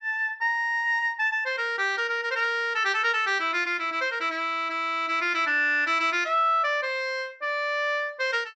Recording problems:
low-pass filter; nothing above 8 kHz

